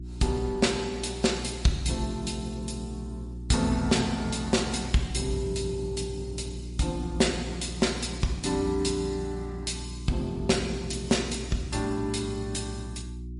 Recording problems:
lossy codec; MP3, log-spectral distance 4 dB, nothing above 10.4 kHz
electrical hum; 60 Hz, harmonics up to 360 Hz, SNR 10 dB

